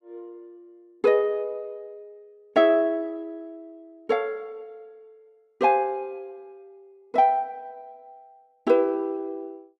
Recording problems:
none

